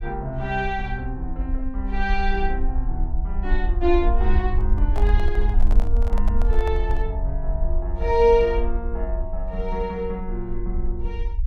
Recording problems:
low-frequency rumble; below 50 Hz, SNR 0 dB
microphone handling noise; from 4.5 to 7 s; peak -5 dB vs average level

